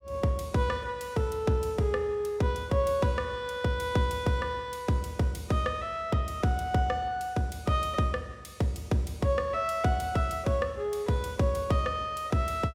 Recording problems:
none

